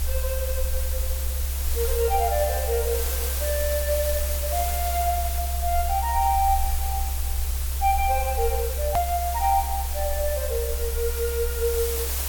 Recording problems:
background hiss; slope -1 dB per octave, SNR 4 dB
rumble; below 68 Hz, strongest tone 66 Hz, SNR 3 dB
click at an edit; at 9 s

